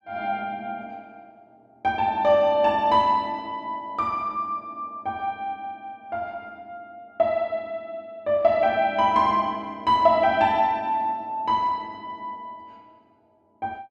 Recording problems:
none

